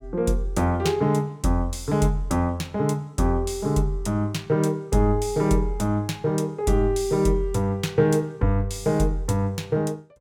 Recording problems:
none

